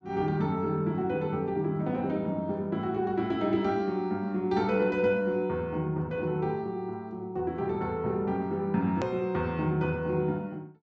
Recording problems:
low-pass filter; nothing above 8 kHz
hard cut with a click; at 9 s

